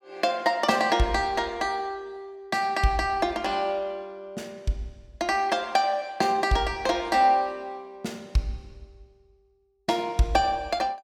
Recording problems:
none

